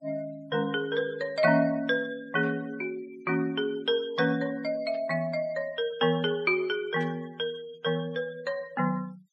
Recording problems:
denoising artefacts; signal-to-artefact ratio 24 dB
static burst; at 2.5 s, at 5 s and at 7 s; peak -18 dB vs average level

